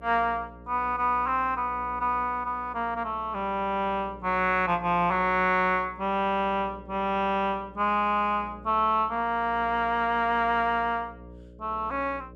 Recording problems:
electrical hum; 60 Hz, harmonics up to 600 Hz, SNR 21 dB

